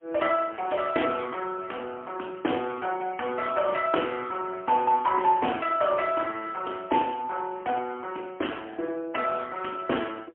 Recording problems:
phone line; 240 Hz to 3.2 kHz, AMR-NB, then MP3

